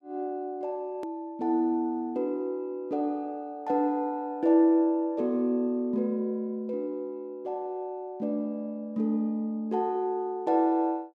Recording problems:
hard cut with a click; at 1 s

